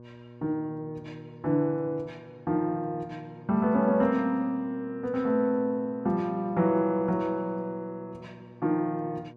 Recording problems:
hum; 60 Hz, harmonics up to 1.1 kHz, SNR 21 dB

